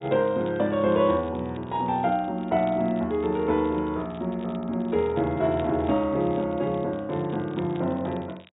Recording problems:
treble cut off; nothing above 4 kHz
crackling; vinyl, SNR 27 dB

